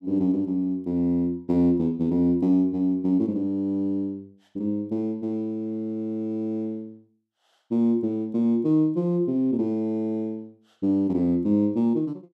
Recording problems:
none

